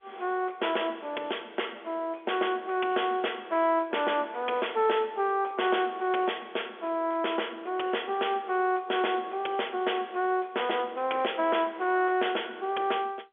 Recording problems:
phone line; 280 Hz to 3.4 kHz, G.711
distortion; soft clipping, signal-to-distortion ratio 10 dB

